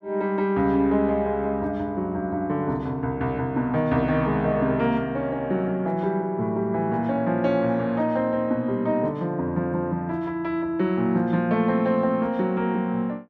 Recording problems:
none

